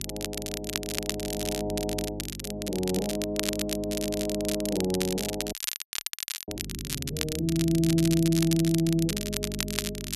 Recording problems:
mains hum; 50 Hz, harmonics up to 400 Hz, SNR 11 dB
crackling; vinyl, SNR 4 dB
frozen audio; at 5.5 s for 1 s

